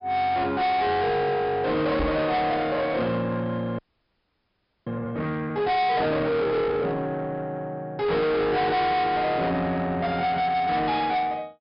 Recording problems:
low-pass filter; nothing above 5.5 kHz
distorted audio; soft clipping, signal-to-distortion ratio 6 dB
knock on the microphone; at 2 s; peak +2 dB vs average level
frozen audio; at 4 s for 1 s

